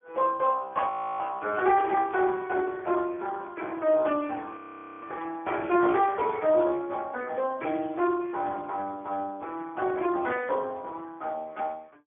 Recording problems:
phone line; 260 Hz to 3.6 kHz, Speex
audio freezing; at 1 s and at 4.5 s
static burst; at 2 s, at 5 s and at 7.5 s; peak -18 dB vs average level

